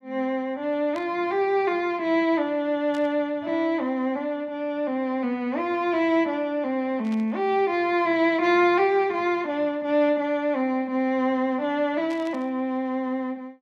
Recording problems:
burst of static; 4 times, first at 1 s; peak -15 dB vs average level

